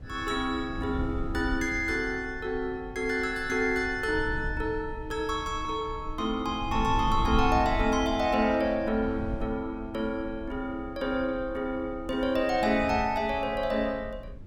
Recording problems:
wind noise; below 96 Hz, SNR 11 dB

